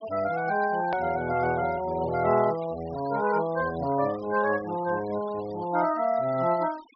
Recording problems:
treble cut off; nothing above 5.5 kHz
noise reduction artefacts; signal-to-artefact ratio 20 dB
edit click; at 1 s

